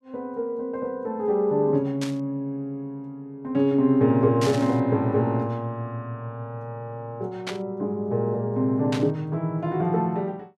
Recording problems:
static burst; 4 times, first at 2 s; peak -3 dB vs average level

